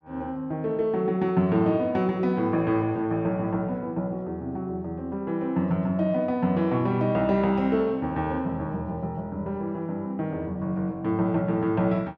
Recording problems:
none

